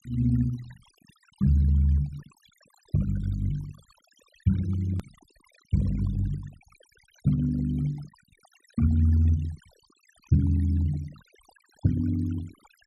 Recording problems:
denoising artefacts; signal-to-artefact ratio 21 dB
hard cut with a click; at 5 s

